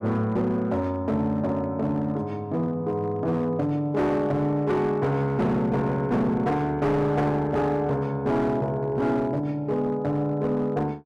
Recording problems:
distorted audio; hard clipping, signal-to-distortion ratio 11 dB

